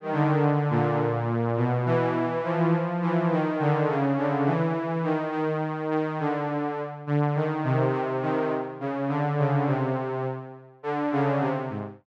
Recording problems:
none

